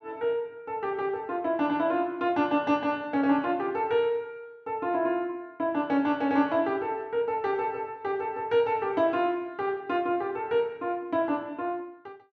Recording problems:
none

